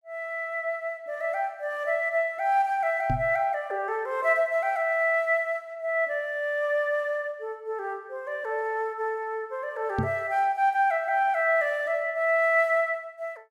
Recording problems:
microphone thump; at 3 s and at 10 s; peak +1 dB vs average level

